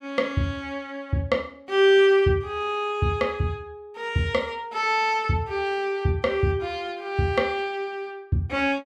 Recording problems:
none

